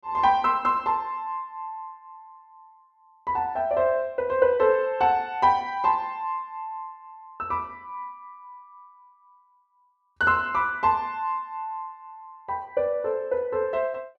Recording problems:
none

